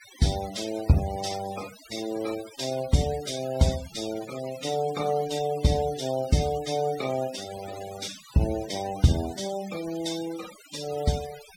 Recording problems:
noise reduction artefacts; signal-to-artefact ratio 14 dB

